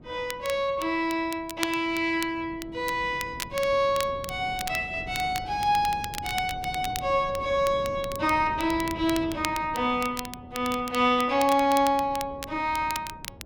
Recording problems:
wind on the microphone; below 320 Hz, SNR 17 dB
crackling; vinyl, SNR 13 dB

